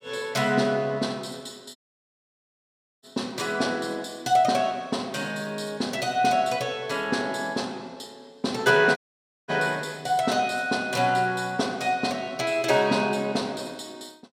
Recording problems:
dropout; at 2 s for 1.5 s and at 9 s for 0.5 s

